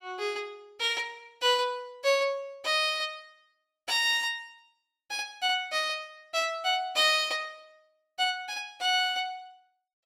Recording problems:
none

